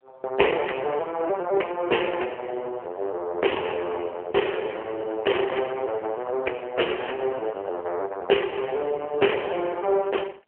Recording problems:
phone line; 320 Hz to 3 kHz, AMR-NB

